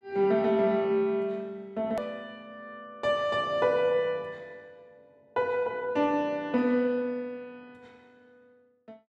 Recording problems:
edit click; at 2 s

